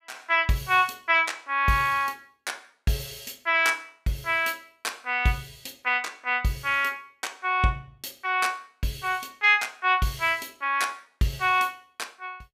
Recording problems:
none

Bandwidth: 15.5 kHz